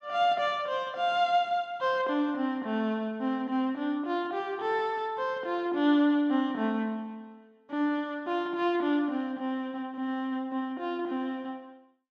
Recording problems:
none

